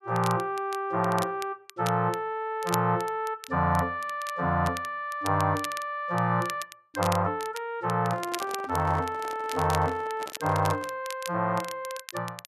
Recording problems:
crackle; vinyl, SNR 14 dB
handling noise; from 8 to 11 s; peak -7 dB vs average level

